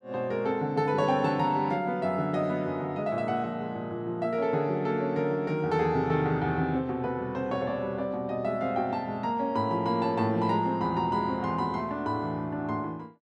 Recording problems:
none

